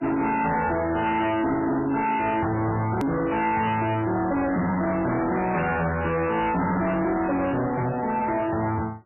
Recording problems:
lossy compression; MP3, log-spectral distance 4 dB, nothing above 2.5 kHz
distorted audio; hard clipping, signal-to-distortion ratio 6 dB
click at an edit; at 3 s

